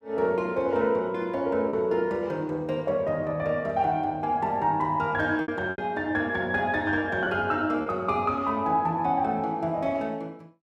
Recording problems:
packet loss; 2% of the sound replaced, filled with repeated pitch periods

